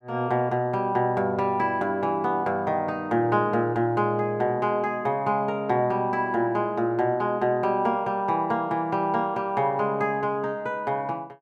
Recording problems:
none

